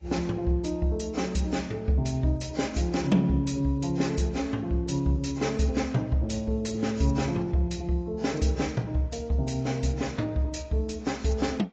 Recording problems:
lossy compression; AAC, log-spectral distance 3 dB, nothing above 7.6 kHz

